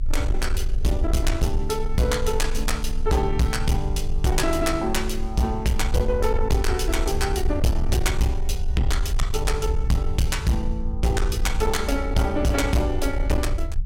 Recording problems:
distorted audio; soft clipping, signal-to-distortion ratio 11 dB
rumble; below 60 Hz, strongest tone 22 Hz, SNR 4 dB

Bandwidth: 16.5 kHz